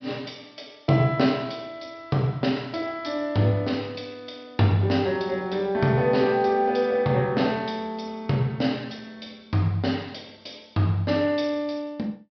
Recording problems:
treble missing; nothing above 5.5 kHz

